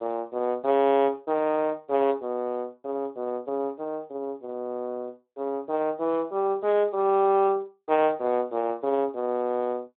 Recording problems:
telephone audio; 220 Hz to 3.6 kHz, Speex

